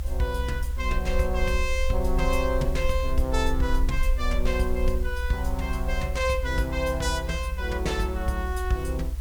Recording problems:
background hiss; slope -2 dB per octave, SNR 20 dB
rumble; below 66 Hz, SNR 2 dB

